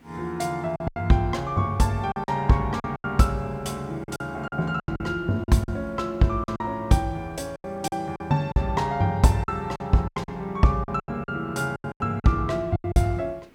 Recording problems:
hiss; SNR 29 dB
lost packets; 12% of the sound replaced, filled with silence

